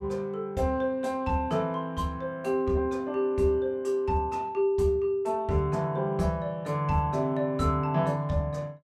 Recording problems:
none

